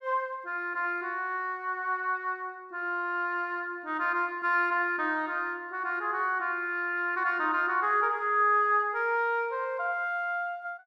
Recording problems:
none

